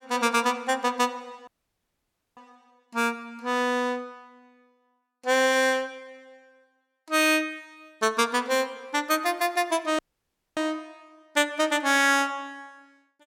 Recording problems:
audio cutting out; at 1.5 s for 1 s and at 10 s for 0.5 s

